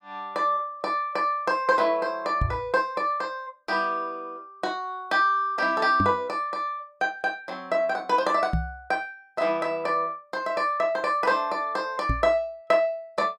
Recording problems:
microphone thump; 4 times, first at 2.5 s; peak +3 dB vs average level

